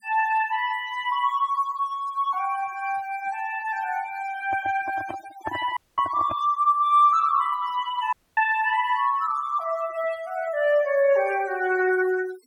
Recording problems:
denoising artefacts; signal-to-artefact ratio 19 dB
handling noise; from 4.5 to 6.5 s; peak -5 dB vs average level
audio cutting out; at 6 s and at 8 s

